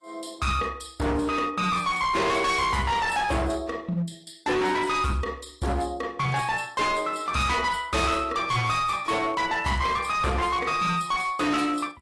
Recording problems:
codec artefacts; AAC, log-spectral distance 4 dB, nothing above 11.3 kHz
distortion; hard clipping, signal-to-distortion ratio 6 dB

